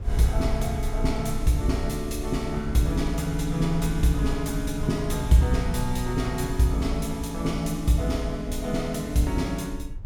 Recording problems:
low-frequency rumble; below 66 Hz, SNR 9 dB
wind noise; below 160 Hz, SNR 21 dB

